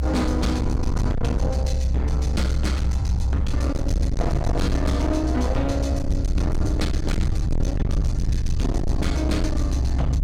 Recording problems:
distorted audio; hard clipping, signal-to-distortion ratio 6 dB
rumble; below 100 Hz, SNR -2 dB
wind noise; below 360 Hz, SNR 20 dB

